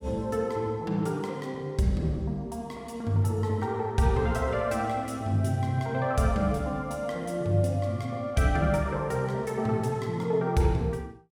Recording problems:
none

